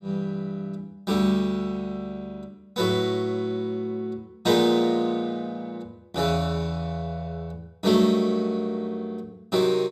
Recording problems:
none

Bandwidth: 15.5 kHz